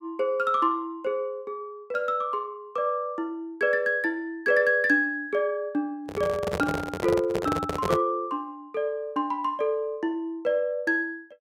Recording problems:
microphone handling noise; from 6 to 8 s; peak +4 dB vs average level

